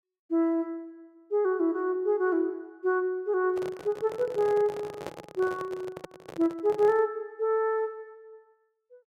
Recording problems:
handling noise; from 3.5 to 7 s; peak -5 dB vs average level

